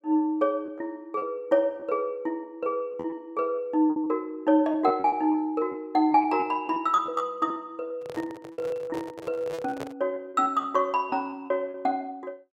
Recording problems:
lost packets; 9% of the sound replaced, filled with repeated pitch periods
microphone handling noise; from 8 to 10 s; peak -4 dB vs average level

